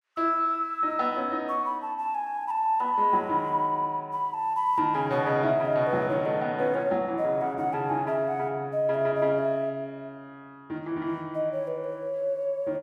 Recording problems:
none

